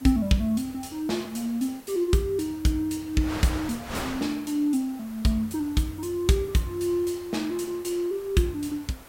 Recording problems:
hiss; SNR 24 dB
wind noise; below 2.4 kHz, SNR 14 dB

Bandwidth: 16 kHz